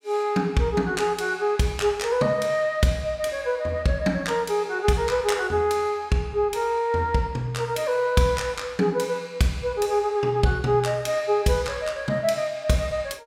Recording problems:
none

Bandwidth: 17 kHz